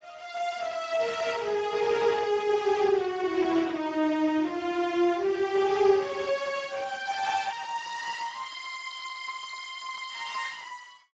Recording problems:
codec artefacts; Speex, log-spectral distance 6 dB, nothing above 7.3 kHz

